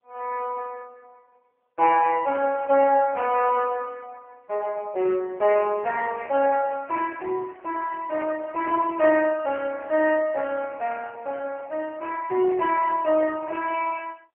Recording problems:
phone line; 320 Hz to 3.1 kHz, AMR-NB

